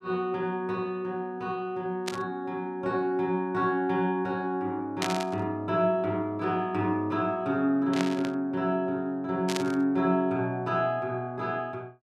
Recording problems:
static burst; 4 times, first at 2 s; peak +2 dB vs average level

